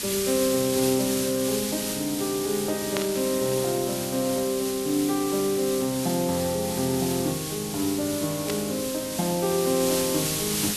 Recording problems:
hiss; SNR 4 dB
burst of static; at 3 s and at 8.5 s; peak 0 dB vs average level

